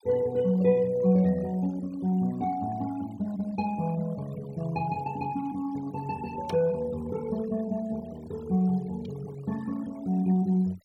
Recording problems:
noise reduction artefacts; signal-to-artefact ratio 21 dB

